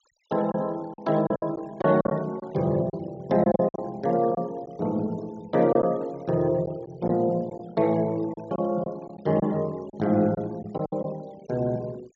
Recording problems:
treble cut off; nothing above 7.5 kHz
noise reduction artefacts; signal-to-artefact ratio 25 dB
packet loss; 7% of the sound replaced, filled with silence

